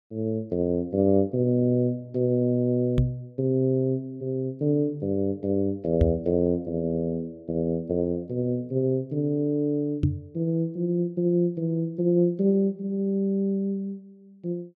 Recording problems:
microphone bump; at 3 s, at 6 s and at 10 s; peak +8 dB vs average level

